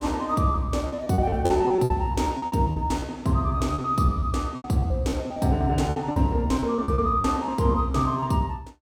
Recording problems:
lost packets; 15% of the sound replaced, filled with repeated pitch periods

